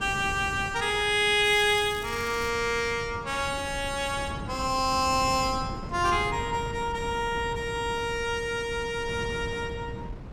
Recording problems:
wind noise; below 270 Hz, SNR 12 dB
crackle; from 1.5 to 2.5 s; loose cable, SNR 19 dB

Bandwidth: 16.5 kHz